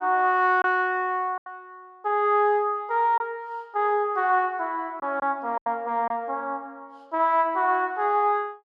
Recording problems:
lost packets; 3% of the sound replaced, filled with silence

